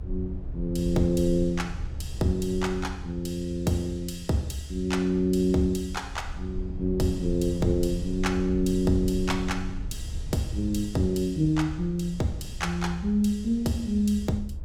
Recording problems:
low-frequency rumble; below 78 Hz, SNR 10 dB

